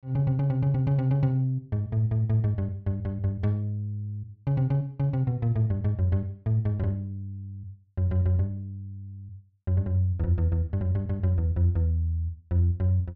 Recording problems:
none

